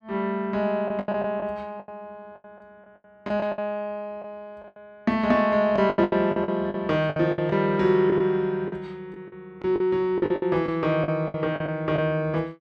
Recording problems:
lost packets; 13% of the sound replaced, filled with the last packet

